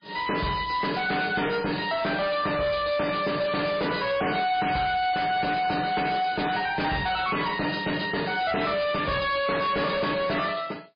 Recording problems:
lossy compression; MP3, log-spectral distance 8 dB, nothing above 4.5 kHz
distortion; hard clipping, signal-to-distortion ratio 8 dB

